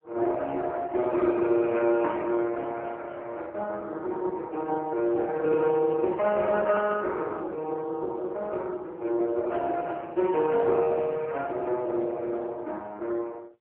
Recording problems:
phone line; 280 Hz to 3.1 kHz, AMR-NB

